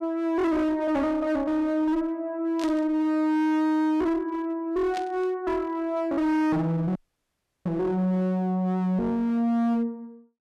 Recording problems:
distortion; hard clipping, uneven, signal-to-distortion ratio 6 dB
burst of static; at 2.5 s and at 5 s; peak -8 dB vs average level
dropout; at 7 s for 0.5 s

